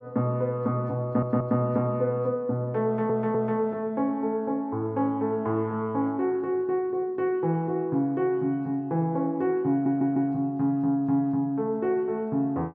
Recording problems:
stutter; at 1 s, at 3 s and at 9.5 s

